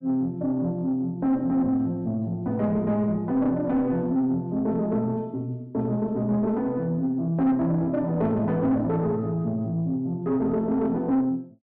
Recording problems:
distortion; soft clipping, signal-to-distortion ratio 11 dB

